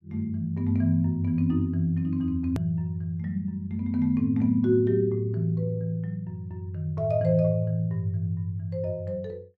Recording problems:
hard cut with a click; at 2.5 s

